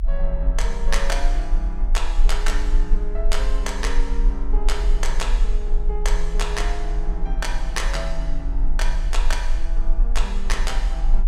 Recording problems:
low-frequency rumble; below 38 Hz, strongest tone 24 Hz, SNR -5 dB

